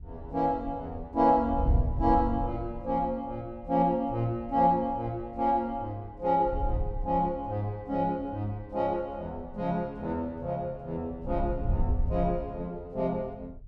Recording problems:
wind noise; below 84 Hz, SNR 6 dB

